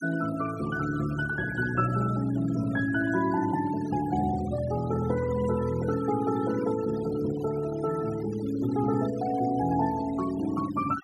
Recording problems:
denoising artefacts; signal-to-artefact ratio 15 dB

